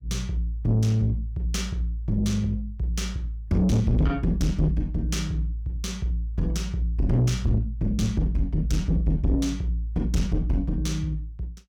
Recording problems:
distortion; soft clipping, signal-to-distortion ratio 7 dB

